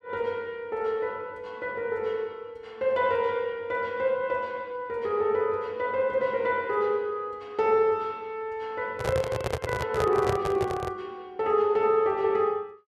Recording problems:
handling noise; from 9 to 11 s; peak +3 dB vs average level

